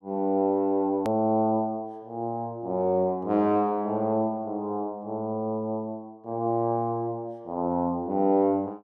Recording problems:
hard cut with a click; at 1 s

